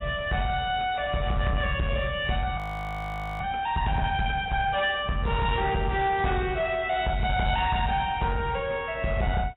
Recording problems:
lossy compression; AAC, log-spectral distance 4 dB, nothing above 3.2 kHz
distortion; soft clipping, signal-to-distortion ratio 10 dB
audio freezing; at 2.5 s for 1 s

